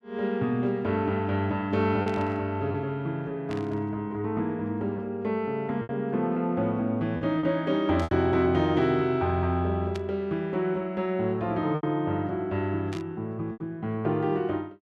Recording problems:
packet loss; 3% of the sound replaced, filled with repeated pitch periods
static burst; 5 times, first at 2 s; peak -9 dB vs average level

